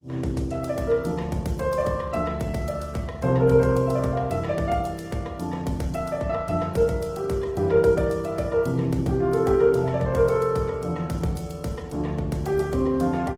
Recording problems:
lossy compression; Opus, log-spectral distance 3 dB

